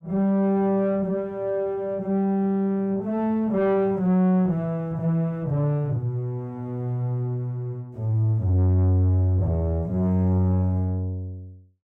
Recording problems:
distortion; soft clipping, signal-to-distortion ratio 9 dB

